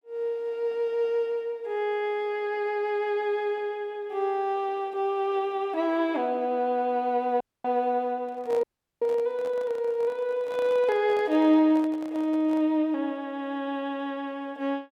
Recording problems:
dropout; at 7.5 s and at 8.5 s
handling noise; from 8 to 13 s; peak -9 dB vs average level

